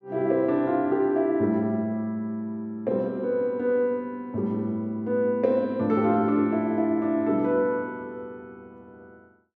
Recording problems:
none

